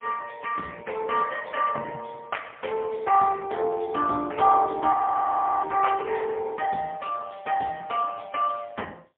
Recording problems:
phone line; 240 Hz to 2.8 kHz, AMR-NB, then MP3
frozen audio; at 5 s for 0.5 s

